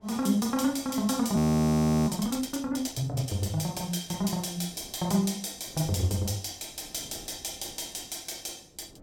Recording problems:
wind on the microphone; below 440 Hz, SNR 24 dB
audio freezing; at 1.5 s for 0.5 s

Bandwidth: 17.5 kHz